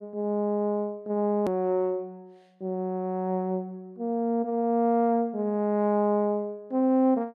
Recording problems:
click at an edit; at 1.5 s

